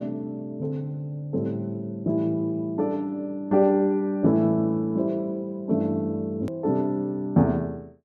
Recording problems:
edit click; at 6.5 s

